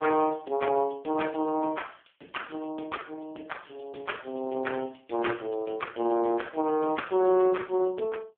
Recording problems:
phone line; 240 Hz to 3.4 kHz, AMR-NB

